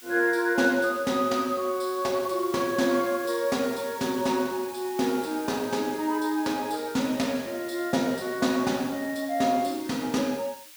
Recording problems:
background hiss; SNR 17 dB

